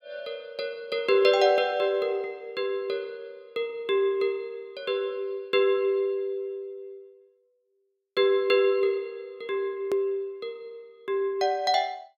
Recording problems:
click at an edit; at 10 s

